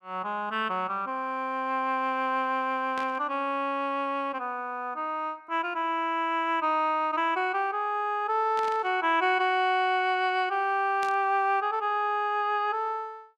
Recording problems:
static burst; at 3 s, at 8.5 s and at 11 s; peak -8 dB vs average level

